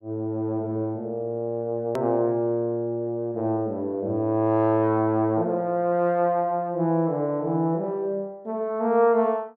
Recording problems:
hard cut with a click; at 2 s

